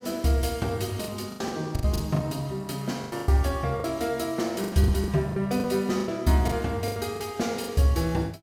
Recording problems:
lost packets; 12% of the sound replaced, filled with the last packet

